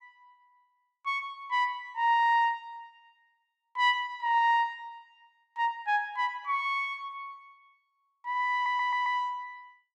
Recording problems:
stutter; at 8.5 s

